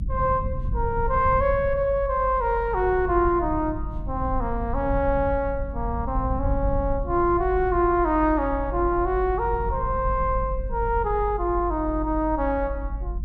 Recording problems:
low-frequency rumble; below 78 Hz, SNR 7 dB

